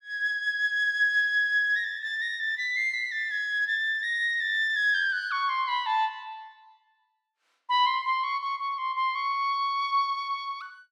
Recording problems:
none

